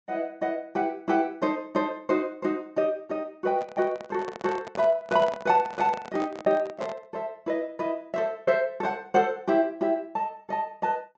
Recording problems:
treble missing; nothing above 8 kHz
microphone handling noise; from 3.5 to 7 s; peak -4 dB vs average level

